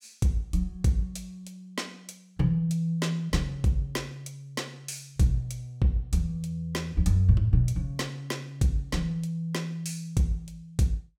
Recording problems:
none

